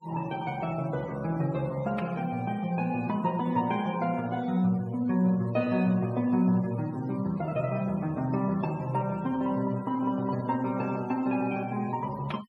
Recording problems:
denoising artefacts; signal-to-artefact ratio 23 dB

